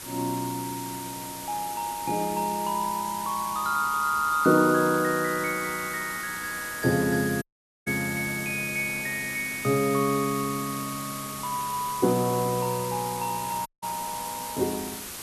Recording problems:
background hiss; slope -1 dB per octave, SNR 9 dB
audio cutting out; at 7.5 s and at 14 s

